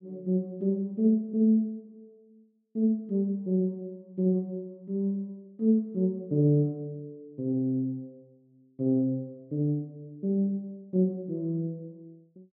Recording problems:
none

